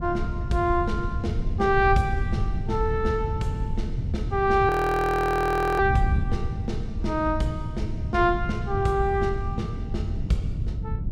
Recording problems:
wind on the microphone; below 120 Hz, SNR 4 dB
audio freezing; at 4.5 s for 1 s

